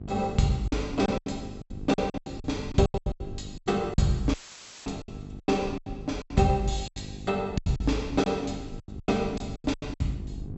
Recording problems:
treble cut off; nothing above 7.8 kHz
hum; 50 Hz, harmonics up to 800 Hz, SNR 14 dB
wind on the microphone; below 140 Hz, SNR 15 dB
lost packets; 16% of the sound replaced, filled with silence
dropout; at 4.5 s for 0.5 s; filled with static

